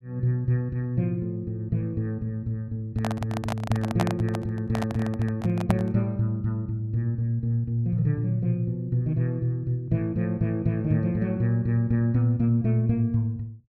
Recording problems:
handling noise; from 3 to 6 s; peak +4 dB vs average level

